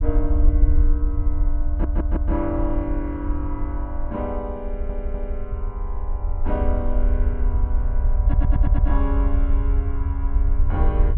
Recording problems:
low-frequency rumble; below 62 Hz, SNR -7 dB
stutter; at 1.5 s, at 4.5 s and at 8 s

